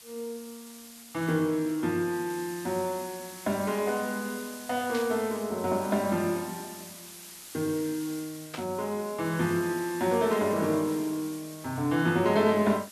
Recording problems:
hiss; slope +2 dB per octave, SNR 15 dB
burst of static; at 5 s and at 8.5 s; peak -5 dB vs average level

